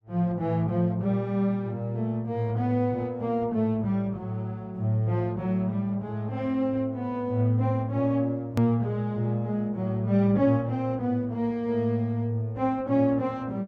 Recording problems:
click at an edit; at 8.5 s

